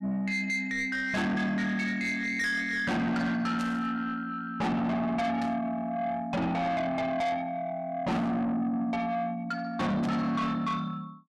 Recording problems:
distorted audio; soft clipping, signal-to-distortion ratio 6 dB
burst of static; 4 times, first at 3.5 s; peak -9 dB vs average level

